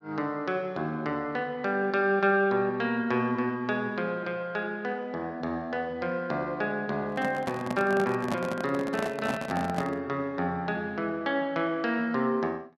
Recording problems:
handling noise; from 7 to 10 s; peak +2 dB vs average level

